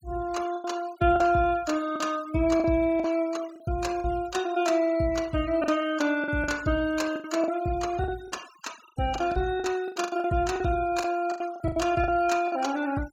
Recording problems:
denoising artefacts; signal-to-artefact ratio 19 dB
packet loss; 10% of the sound replaced, filled with the last packet

